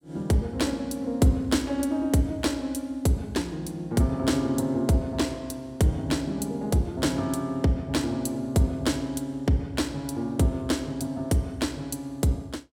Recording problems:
none

